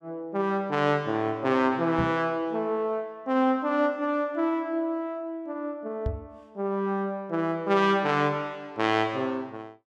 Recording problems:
microphone thump; at 2 s and at 6 s; peak 0 dB vs average level

